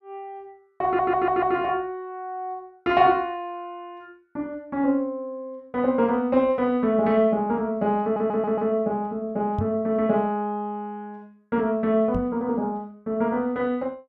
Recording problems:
audio stuttering; at 1 s and at 8 s
knock on the microphone; at 9.5 s and at 12 s; peak 0 dB vs average level

